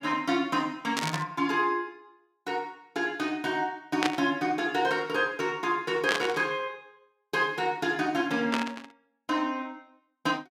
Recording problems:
burst of static; 4 times, first at 1 s; peak +5 dB vs average level

